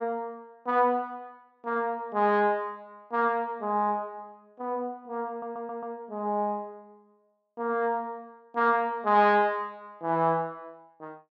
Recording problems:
stutter; at 5.5 s

